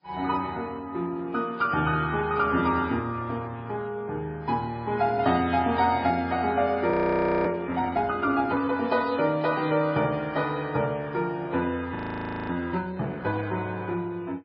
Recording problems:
low-pass filter; nothing above 4.5 kHz
codec artefacts; MP3, then AAC, log-spectral distance 2 dB
audio freezing; at 7 s for 0.5 s and at 12 s for 0.5 s

